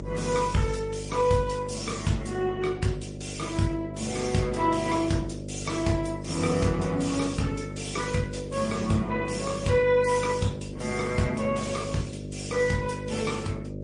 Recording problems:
lossy codec; Opus, then MP3, log-spectral distance 4 dB, nothing above 10.1 kHz
hum; 50 Hz, harmonics up to 600 Hz, SNR 7 dB

